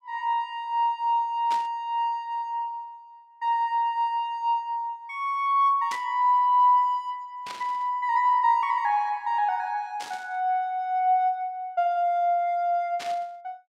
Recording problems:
static burst; 5 times, first at 1.5 s; peak -7 dB vs average level

